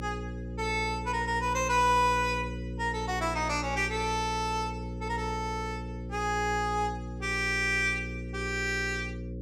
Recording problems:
hum; 60 Hz, harmonics up to 540 Hz, SNR 8 dB

